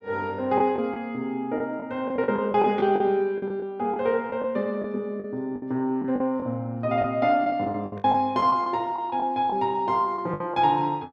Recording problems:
lost packets; 10% of the sound replaced, filled with the last packet

